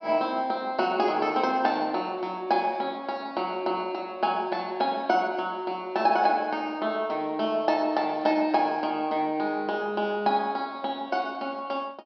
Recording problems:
treble missing; nothing above 5.5 kHz

